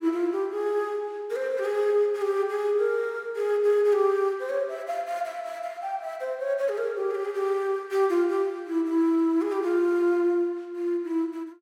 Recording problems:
none

